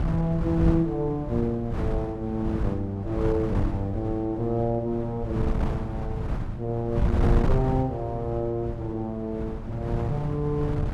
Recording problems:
wind on the microphone; below 170 Hz, SNR 3 dB

